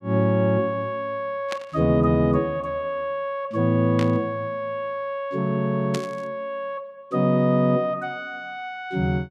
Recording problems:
static burst; at 1.5 s, at 4 s and at 6 s; peak -4 dB vs average level

